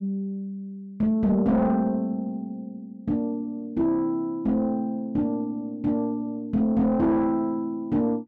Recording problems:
distorted audio; soft clipping, signal-to-distortion ratio 11 dB

